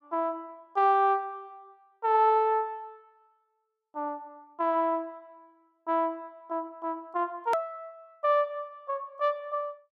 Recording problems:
edit click; at 7.5 s

